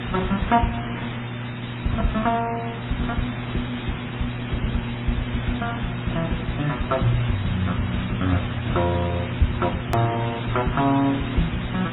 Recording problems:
lossy codec; MP3, then AAC, log-spectral distance 14 dB, nothing above 17.7 kHz
mains hum; 60 Hz, harmonics up to 840 Hz, SNR 6 dB
background hiss; SNR 8 dB
edit click; at 10 s

